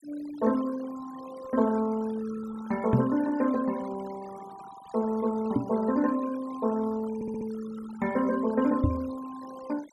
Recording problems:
denoising artefacts; signal-to-artefact ratio 17 dB
knock on the microphone; at 3 s, at 5.5 s and at 9 s; peak +8 dB vs average level
audio stuttering; at 7 s

